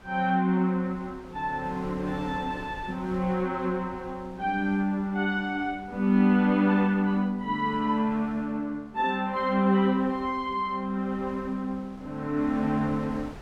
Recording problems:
wind noise; below 740 Hz, SNR 21 dB

